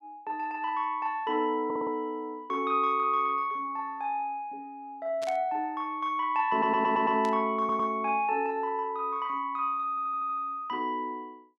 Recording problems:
stutter; 4 times, first at 1.5 s
burst of static; at 5 s and at 7 s; peak -9 dB vs average level

